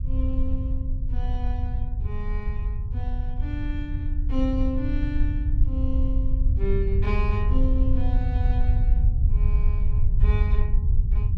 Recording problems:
low-frequency rumble; below 72 Hz, SNR -8 dB

